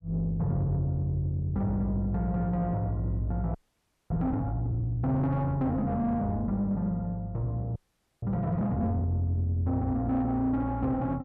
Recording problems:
distortion; soft clipping, signal-to-distortion ratio 11 dB
frozen audio; at 3.5 s for 0.5 s and at 8 s

